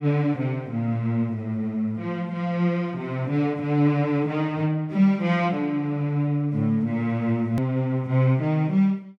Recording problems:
hard cut with a click; at 7.5 s

